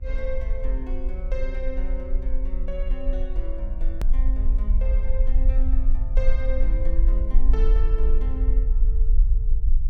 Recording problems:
hum; 60 Hz, harmonics up to 840 Hz, SNR 20 dB
low-frequency rumble; below 44 Hz, SNR -11 dB
hard cut with a click; at 4 s

